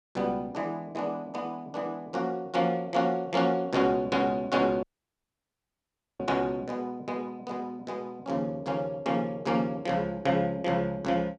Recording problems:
audio cutting out; at 5 s for 1.5 s

